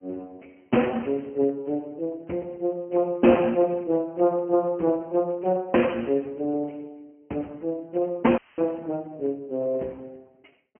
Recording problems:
telephone audio; 190 Hz to 3 kHz, Speex
audio cutting out; at 8.5 s; filled with static

